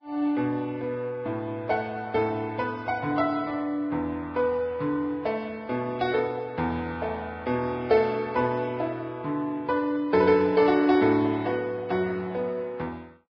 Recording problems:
codec artefacts; Vorbis, log-spectral distance 2 dB, nothing above 5 kHz

